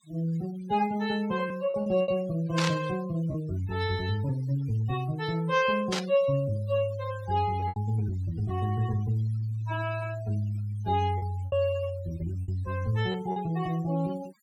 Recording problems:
noise reduction artefacts; signal-to-artefact ratio 18 dB
lost packets; 4% of the sound replaced, filled with repeated pitch periods
static burst; at 2.5 s and at 6 s; peak +2 dB vs average level

